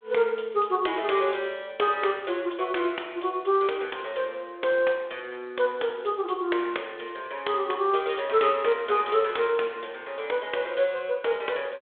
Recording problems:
telephone audio; 320 Hz to 3.5 kHz, G.726

